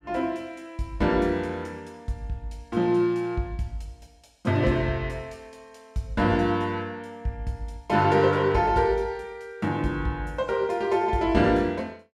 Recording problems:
none

